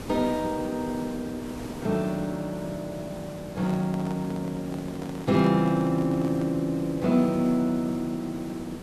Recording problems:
hiss; slope -6 dB per octave, SNR 12 dB
handling noise; from 3.5 to 6.5 s; peak -9 dB vs average level

